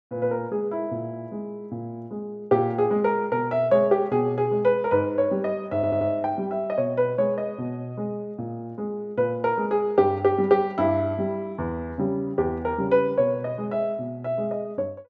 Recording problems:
stutter; at 6 s

